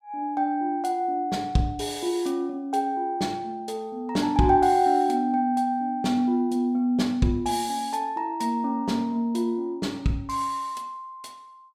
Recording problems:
none

